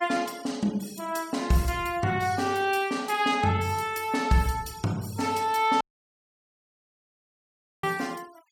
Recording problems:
denoising artefacts; signal-to-artefact ratio 21 dB
dropout; at 6 s for 2 s

